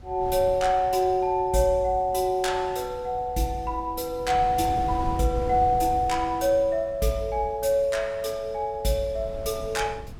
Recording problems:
wind on the microphone; below 170 Hz, SNR 15 dB

